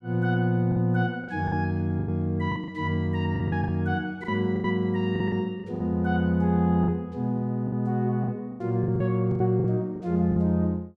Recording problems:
lost packets; 11% of the sound replaced, filled with the last packet

